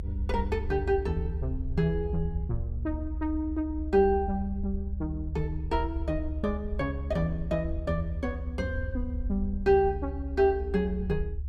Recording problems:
rumble; below 72 Hz, strongest tone 72 Hz, SNR 5 dB

